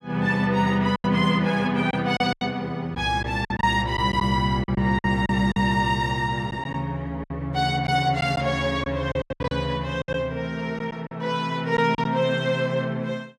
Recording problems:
lost packets; 8% of the sound replaced, filled with silence

